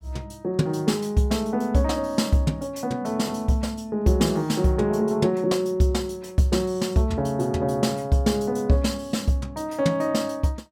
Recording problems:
none

